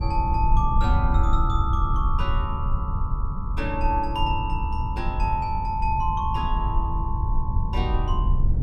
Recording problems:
rumble; below 78 Hz, SNR -2 dB

